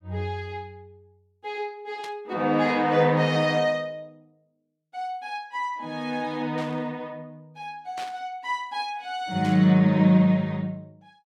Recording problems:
burst of static; 4 times, first at 2 s; peak -10 dB vs average level

